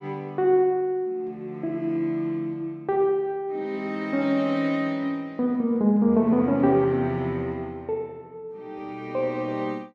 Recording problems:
none

